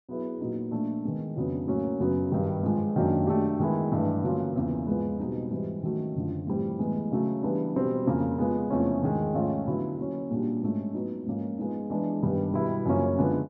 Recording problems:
none

